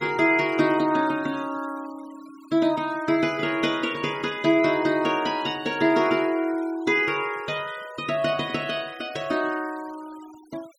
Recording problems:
denoising artefacts; signal-to-artefact ratio 22 dB

